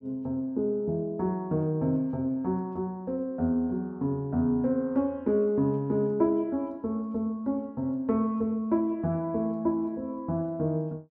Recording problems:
none

